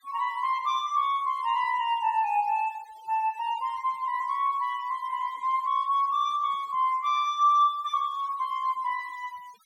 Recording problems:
noise reduction artefacts; signal-to-artefact ratio 25 dB

